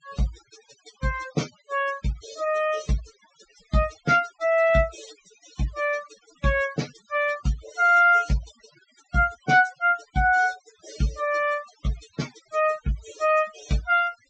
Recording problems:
treble cut off; nothing above 8 kHz
noise reduction artefacts; signal-to-artefact ratio 20 dB

